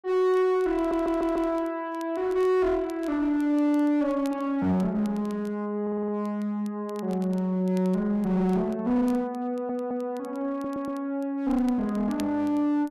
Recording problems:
distortion; hard clipping, uneven, signal-to-distortion ratio 9 dB
crackle; vinyl, SNR 28 dB
audio stuttering; 4 times, first at 1 s

